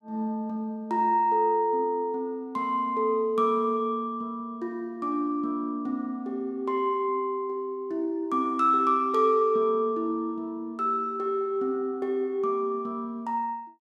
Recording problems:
none

